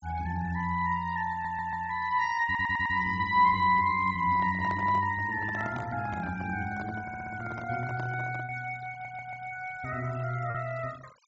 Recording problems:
low-pass filter; nothing above 8 kHz
denoising artefacts; signal-to-artefact ratio 21 dB
lost packets; 0.8% of the sound replaced, filled with repeated pitch periods
audio stuttering; 4 times, first at 1.5 s
handling noise; from 4 to 8.5 s; peak -6 dB vs average level

